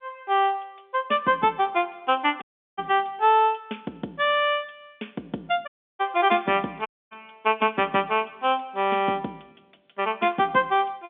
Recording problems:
phone line; 190 Hz to 3.5 kHz, G.711
dropout; at 2.5 s, at 5.5 s and at 7 s

